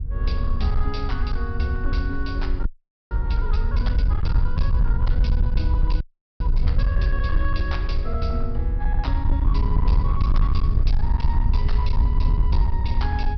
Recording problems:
low-pass filter; nothing above 5.5 kHz
distortion; hard clipping, uneven, signal-to-distortion ratio 10 dB
low-frequency rumble; below 68 Hz, SNR -7 dB
frozen audio; at 2.5 s and at 6 s

